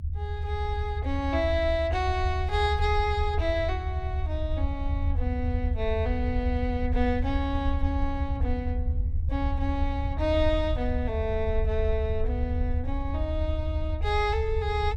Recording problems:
rumble; below 80 Hz, SNR 0 dB

